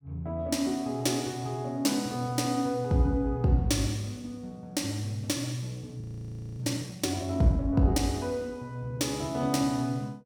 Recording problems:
audio freezing; at 6 s for 0.5 s

